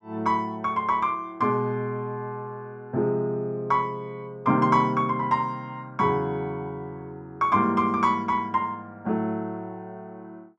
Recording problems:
none

